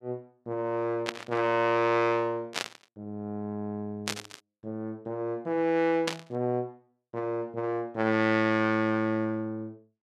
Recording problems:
burst of static; 4 times, first at 1 s; peak +3 dB vs average level

